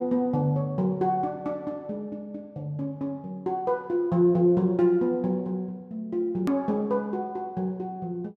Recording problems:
edit click; at 6.5 s

